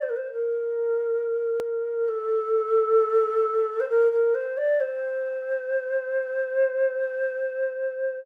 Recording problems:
hard cut with a click; at 1.5 s

